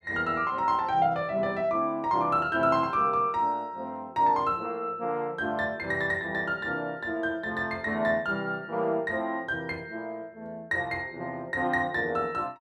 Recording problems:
none

